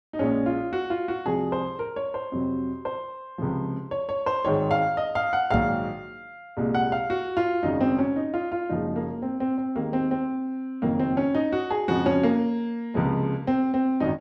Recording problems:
knock on the microphone; at 5.5 s; peak +2 dB vs average level

